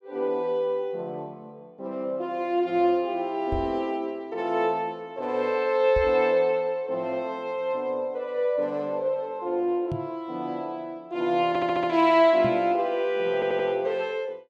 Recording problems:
knock on the microphone; 4 times, first at 3.5 s; peak -3 dB vs average level
audio stuttering; at 11 s and at 13 s

